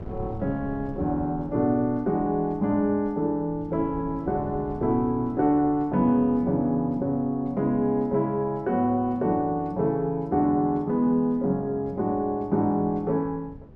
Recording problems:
wind on the microphone; below 220 Hz, SNR 19 dB

